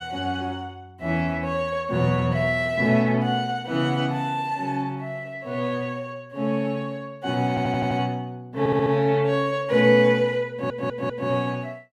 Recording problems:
audio stuttering; at 7.5 s, at 8.5 s and at 11 s

